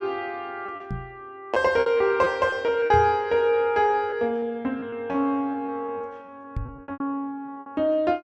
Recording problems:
lost packets; 10% of the sound replaced, filled with repeated pitch periods
knock on the microphone; at 1 s, at 3 s and at 6.5 s; peak -2 dB vs average level

